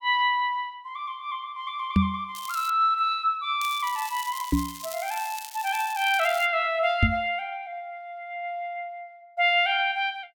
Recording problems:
microphone bump; at 2 s, at 4.5 s and at 7 s; peak +8 dB vs average level
crackling; at 2.5 s and from 3.5 to 6.5 s; loose cable, SNR 13 dB

